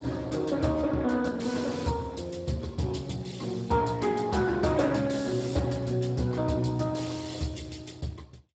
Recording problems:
lossy compression; Speex, log-spectral distance 5 dB, nothing above 7.8 kHz

